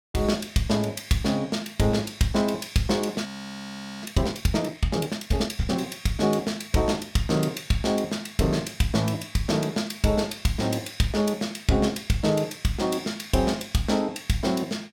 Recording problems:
audio freezing; at 3.5 s for 1 s

